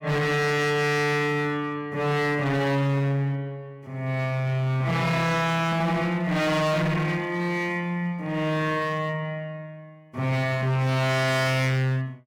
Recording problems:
distorted audio; hard clipping, signal-to-distortion ratio 6 dB

